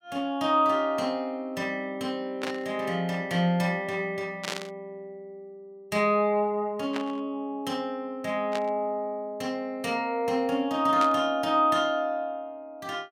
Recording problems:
burst of static; 5 times, first at 2.5 s; peak -1 dB vs average level

